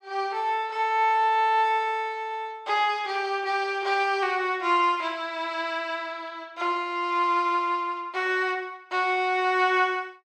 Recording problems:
none

